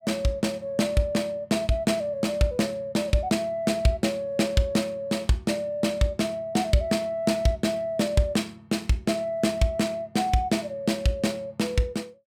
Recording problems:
none

